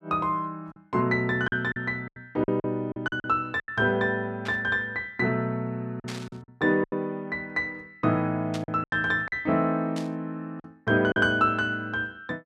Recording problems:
packet loss; 8% of the sound replaced, filled with silence
static burst; 4 times, first at 4.5 s; peak -7 dB vs average level

